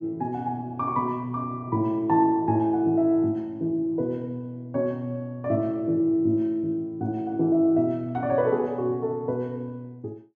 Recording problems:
none

